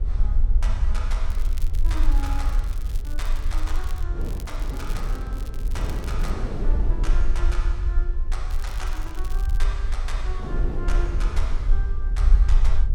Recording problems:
low-frequency rumble; below 46 Hz, strongest tone 20 Hz, SNR -12 dB
wind on the microphone; below 290 Hz, SNR 0 dB
crackle; from 1.5 to 4 s, from 4 to 6.5 s and from 8.5 to 9.5 s; loose cable, SNR 9 dB

